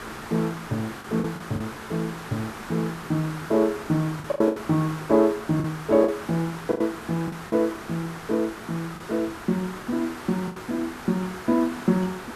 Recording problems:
hiss; SNR 11 dB
packet loss; 6% of the sound replaced, filled with the last packet

